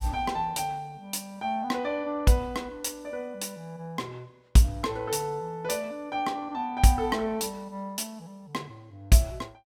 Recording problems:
none

